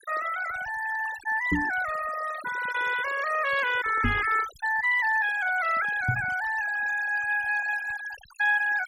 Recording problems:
noise reduction artefacts; signal-to-artefact ratio 14 dB
microphone thump; at 1.5 s, at 4 s and at 6 s; peak +3 dB vs average level

